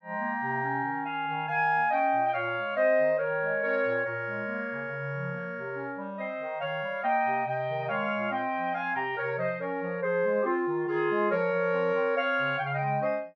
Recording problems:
none

